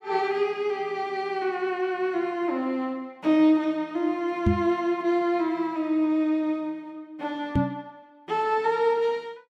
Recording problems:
microphone bump; at 4.5 s and at 7.5 s; peak +6 dB vs average level

